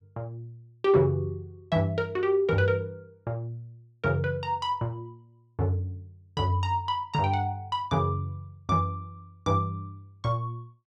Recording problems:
none

